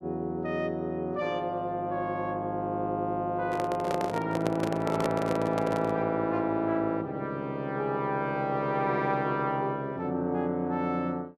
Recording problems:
microphone handling noise; from 3.5 to 6 s; peak +3 dB vs average level

